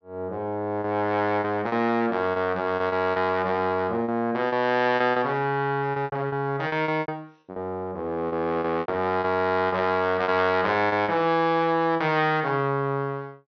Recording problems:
treble cut off; nothing above 6.2 kHz
lost packets; 9% of the sound replaced, filled with repeated pitch periods

